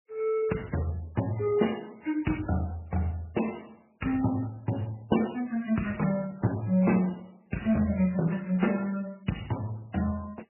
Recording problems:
lossy compression; Speex, then MP3, log-spectral distance 5 dB, nothing above 2.9 kHz

